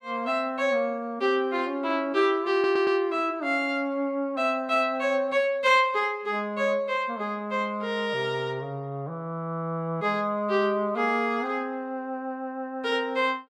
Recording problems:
audio stuttering; at 2.5 s

